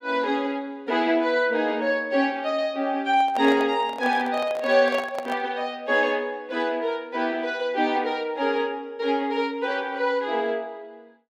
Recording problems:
microphone handling noise; from 3 to 5.5 s; peak -4 dB vs average level

